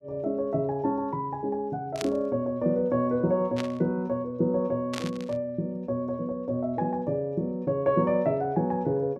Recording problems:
static burst; at 2 s, at 3.5 s and at 5 s; peak -2 dB vs average level

